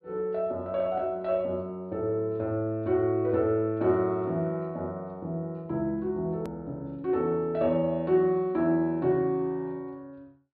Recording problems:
treble cut off; nothing above 5 kHz
hard cut with a click; at 6.5 s

